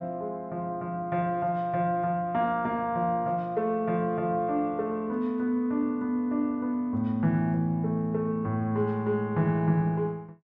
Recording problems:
none

